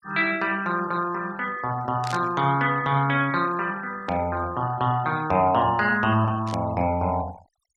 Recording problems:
denoising artefacts; signal-to-artefact ratio 23 dB
static burst; at 2 s, at 4 s and at 6.5 s; peak -8 dB vs average level

